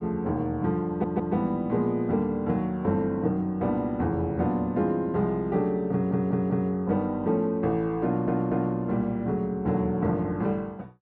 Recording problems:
stutter; at 1 s, at 6 s and at 8 s

